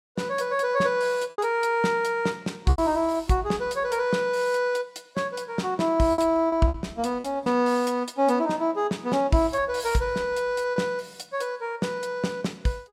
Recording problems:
packet loss; 4% of the sound replaced, filled with repeated pitch periods

